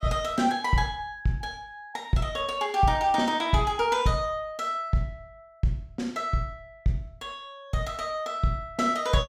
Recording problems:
none

